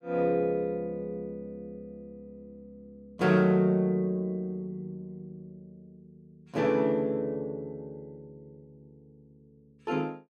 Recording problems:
none

